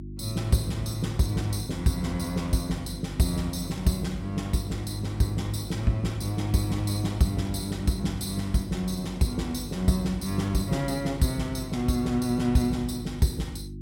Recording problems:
electrical hum; 50 Hz, harmonics up to 350 Hz, SNR 12 dB

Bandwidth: 16 kHz